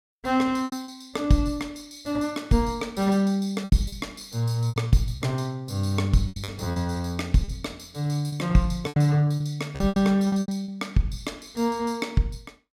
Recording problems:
lost packets; 9% of the sound replaced, filled with repeated pitch periods

